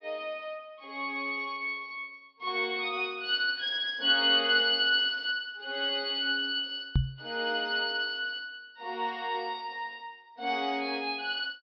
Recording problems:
treble missing; nothing above 5.5 kHz
knock on the microphone; at 7 s; peak +6 dB vs average level

